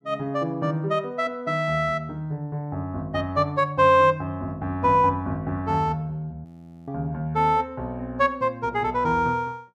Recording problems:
audio freezing; at 6.5 s

